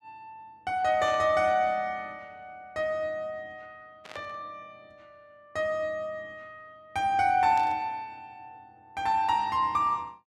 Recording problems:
burst of static; at 1 s, at 4 s and at 7.5 s; peak -13 dB vs average level

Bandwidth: 14 kHz